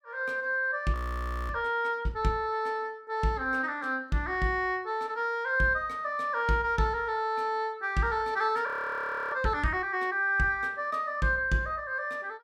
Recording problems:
audio freezing; at 1 s for 0.5 s and at 8.5 s for 0.5 s

